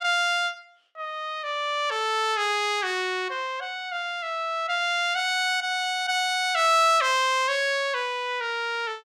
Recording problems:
none

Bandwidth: 16.5 kHz